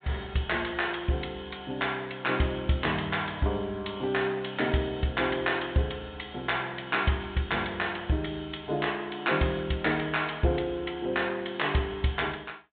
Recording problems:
treble missing; nothing above 4 kHz

